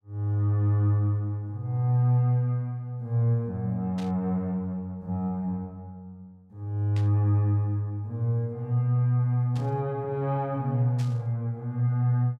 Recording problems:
static burst; 4 times, first at 4 s; peak -13 dB vs average level

